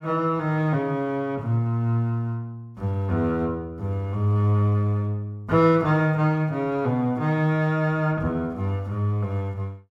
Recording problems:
none

